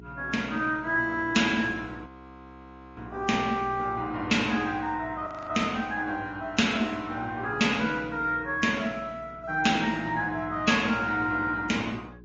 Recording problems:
lossy compression; MP3, then Opus, log-spectral distance 2 dB, nothing above 6.7 kHz
electrical hum; 60 Hz, harmonics up to 420 Hz, SNR 21 dB
frozen audio; at 2 s for 1 s and at 5.5 s

